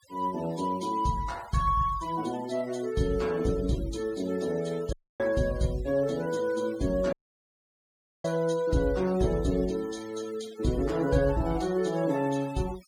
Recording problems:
noise reduction artefacts; signal-to-artefact ratio 20 dB
dropout; at 5 s and at 7 s for 1 s

